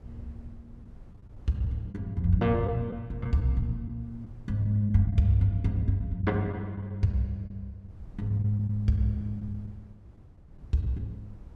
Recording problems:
wind on the microphone; below 110 Hz, SNR 22 dB
lost packets; 5% of the sound replaced, filled with the last packet

